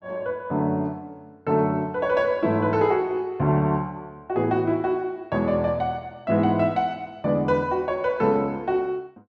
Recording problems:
none

